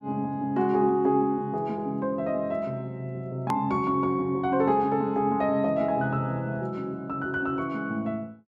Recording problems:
edit click; at 3.5 s

